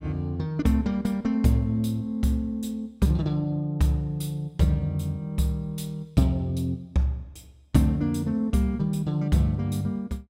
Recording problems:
none

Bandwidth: 16.5 kHz